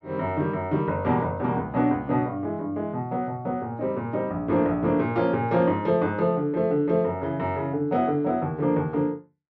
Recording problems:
none

